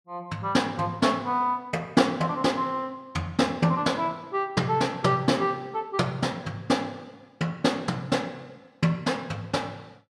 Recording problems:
none

